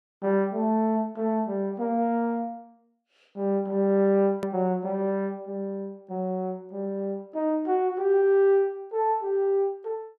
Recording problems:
edit click; at 4.5 s

